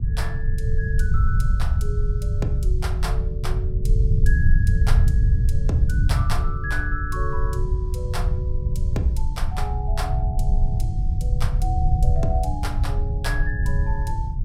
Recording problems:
hum; 60 Hz, harmonics up to 1 kHz, SNR 21 dB
rumble; below 88 Hz, SNR -8 dB

